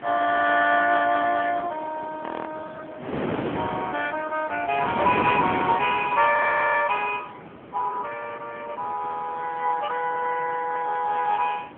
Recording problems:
phone line; 340 Hz to 3.2 kHz, AMR-NB
wind on the microphone; below 920 Hz, SNR 11 dB
frozen audio; at 2 s and at 6.5 s

